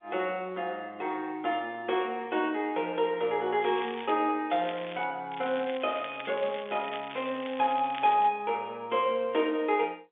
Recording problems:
phone line; 300 Hz to 3.7 kHz, G.711
crackling; at 3.5 s, at 4.5 s and from 5.5 to 8.5 s; loose cable, SNR 15 dB

